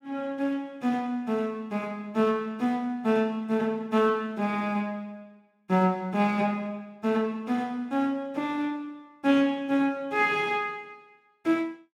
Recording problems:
none

